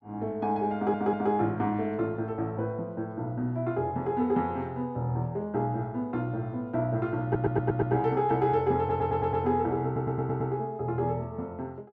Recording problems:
audio stuttering; 4 times, first at 1 s

